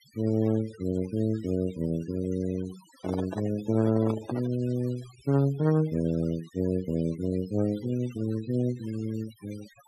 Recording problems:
denoising artefacts; signal-to-artefact ratio 19 dB
microphone handling noise; from 3 to 4.5 s; peak -3 dB vs average level

